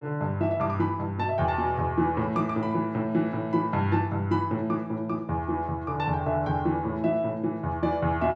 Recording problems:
none

